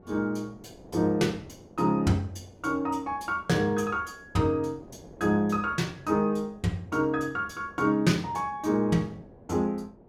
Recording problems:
wind on the microphone; below 550 Hz, SNR 23 dB

